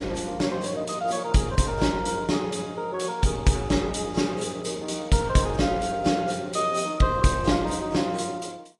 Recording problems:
lossy codec; AAC, log-spectral distance 4 dB, nothing above 10.1 kHz

